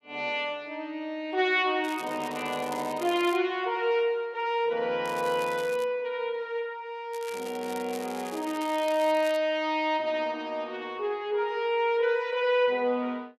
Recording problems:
crackle; from 2 to 3.5 s, at 5 s and from 7 to 9.5 s; loose cable, SNR 17 dB

